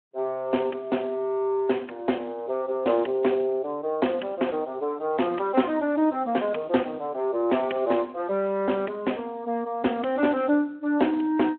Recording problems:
telephone audio; 220 Hz to 3.3 kHz, Speex

